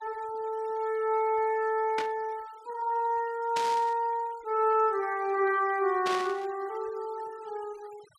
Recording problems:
noise reduction artefacts; signal-to-artefact ratio 25 dB
static burst; at 2 s, at 3.5 s and at 6 s; peak -2 dB vs average level

